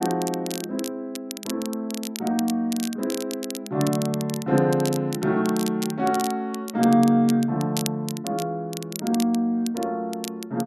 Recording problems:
crackling; vinyl, SNR 12 dB

